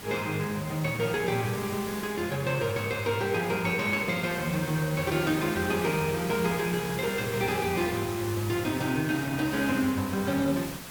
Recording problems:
hiss; slope -2 dB per octave, SNR 11 dB

